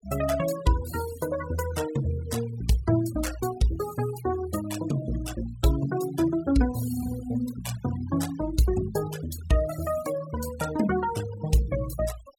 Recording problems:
denoising artefacts; signal-to-artefact ratio 14 dB

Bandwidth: 17 kHz